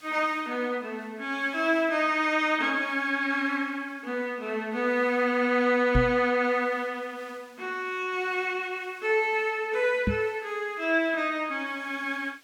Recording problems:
background hiss; slope 0 dB per octave, SNR 29 dB
microphone thump; at 6 s and at 10 s; peak +5 dB vs average level

